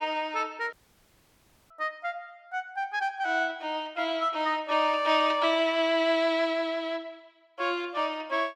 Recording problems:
audio cutting out; at 0.5 s for 1 s

